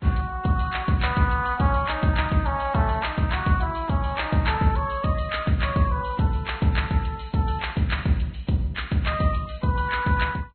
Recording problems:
lossy codec; MP2, then Vorbis, log-spectral distance 5 dB, nothing above 4.2 kHz

